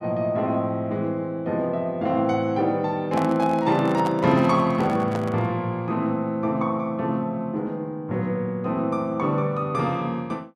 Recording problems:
handling noise; from 3 to 5.5 s; peak -3 dB vs average level

